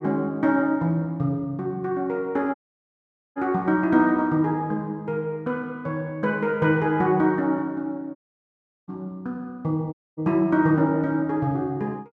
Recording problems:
dropout; at 2.5 s for 1 s, at 8 s for 0.5 s and at 10 s

